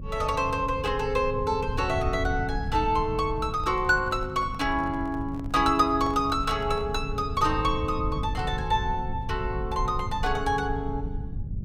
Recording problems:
hum; 50 Hz, harmonics up to 450 Hz, SNR 15 dB
low-frequency rumble; below 100 Hz, SNR 9 dB
handling noise; from 3.5 to 7 s; peak -11 dB vs average level

